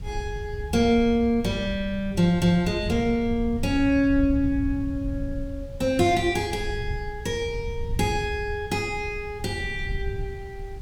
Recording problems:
background hiss; slope -4 dB per octave, SNR 29 dB
wind on the microphone; below 98 Hz, SNR 10 dB

